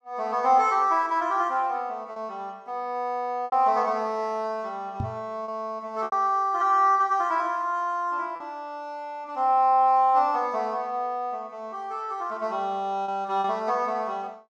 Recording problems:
packet loss; 3% of the sound replaced, filled with repeated pitch periods
microphone bump; at 5 s; peak -1 dB vs average level

